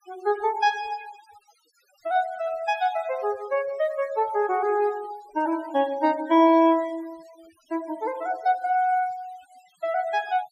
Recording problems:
denoising artefacts; signal-to-artefact ratio 23 dB

